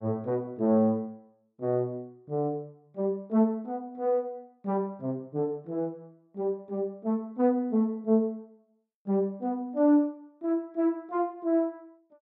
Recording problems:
none

